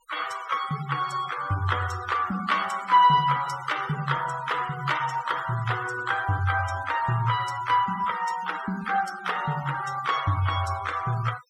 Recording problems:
noise reduction artefacts; signal-to-artefact ratio 14 dB

